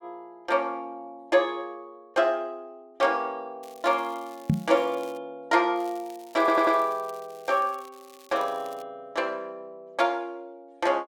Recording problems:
crackling; from 3.5 to 5 s, from 6 to 8 s and at 8 s; loose cable, SNR 25 dB
microphone thump; at 4.5 s; peak +7 dB vs average level
stutter; at 6.5 s

